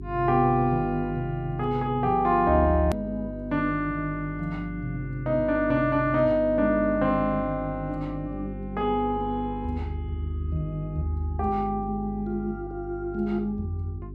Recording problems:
hum; 50 Hz, harmonics up to 400 Hz, SNR 12 dB
click at an edit; at 3 s

